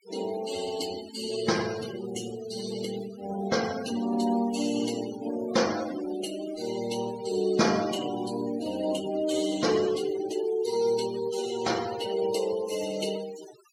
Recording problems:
denoising artefacts; signal-to-artefact ratio 12 dB

